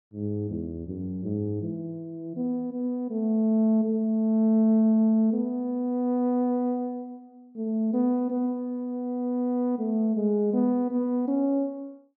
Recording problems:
none

